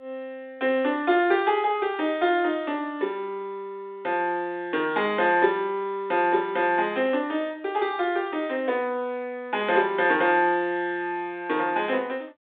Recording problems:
phone line; 280 Hz to 3.8 kHz, G.726

